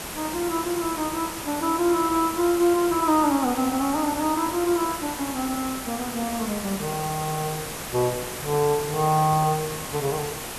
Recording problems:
hiss; slope -3 dB per octave, SNR 7 dB

